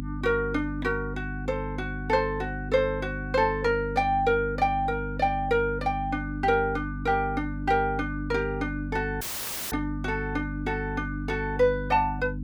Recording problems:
electrical hum; 50 Hz, harmonics up to 300 Hz, SNR 7 dB
audio cutting out; at 9 s for 0.5 s

